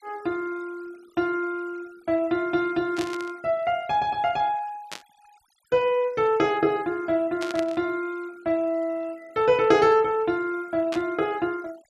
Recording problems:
noise reduction artefacts; signal-to-artefact ratio 26 dB
burst of static; 4 times, first at 3 s; peak -5 dB vs average level

